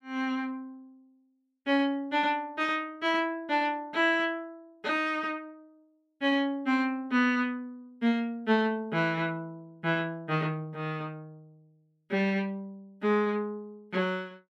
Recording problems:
none

